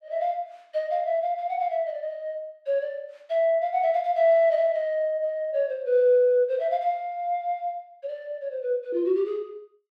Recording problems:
none

